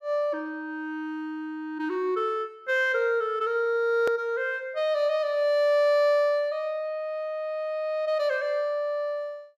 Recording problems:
edit click; at 4 s

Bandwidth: 14.5 kHz